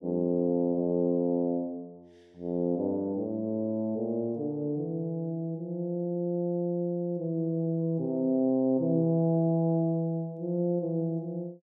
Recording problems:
none

